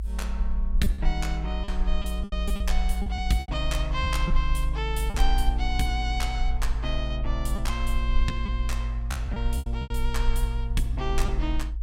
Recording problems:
low-frequency rumble; below 54 Hz, SNR -3 dB
packet loss; 7% of the sound replaced, filled with repeated pitch periods

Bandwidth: 16 kHz